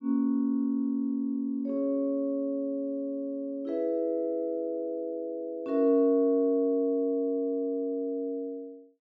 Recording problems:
none

